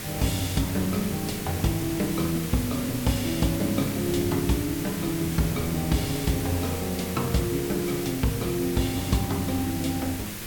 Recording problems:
background hiss; slope 0 dB per octave, SNR 7 dB
wind noise; below 370 Hz, SNR 12 dB

